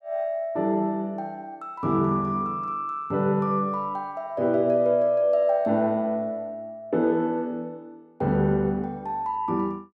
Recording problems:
none

